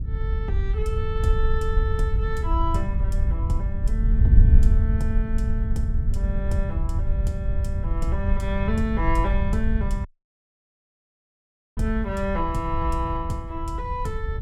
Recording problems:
wind on the microphone; below 78 Hz, SNR -5 dB
dropout; at 10 s for 1.5 s

